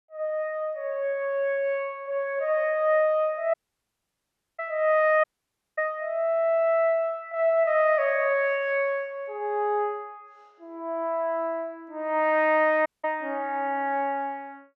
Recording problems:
dropout; at 3.5 s for 1 s, at 5 s for 0.5 s and at 13 s

